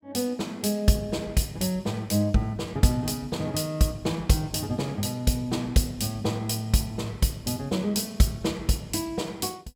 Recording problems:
none

